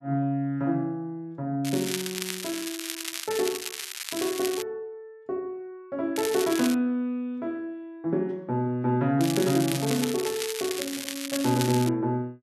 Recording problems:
crackle; from 1.5 to 4.5 s, at 6 s and from 9 to 12 s; loose cable, SNR 5 dB

